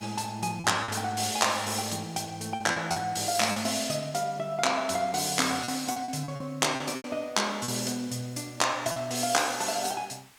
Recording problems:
hiss; slope 0 dB per octave, SNR 27 dB
lost packets; 6% of the sound replaced, filled with repeated pitch periods

